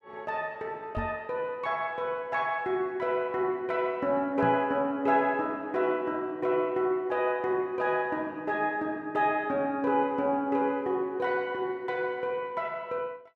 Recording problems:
microphone thump; at 1 s and at 4.5 s; peak -2 dB vs average level

